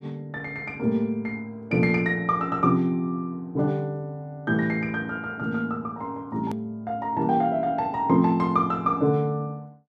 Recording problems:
hard cut with a click; at 6.5 s

